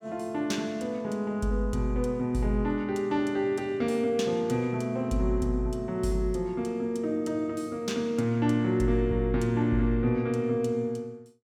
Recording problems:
none

